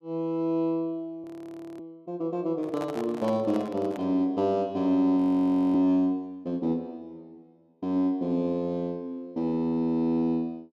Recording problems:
audio freezing; at 1 s for 0.5 s and at 5 s for 0.5 s
microphone handling noise; from 2.5 to 4 s; peak -6 dB vs average level

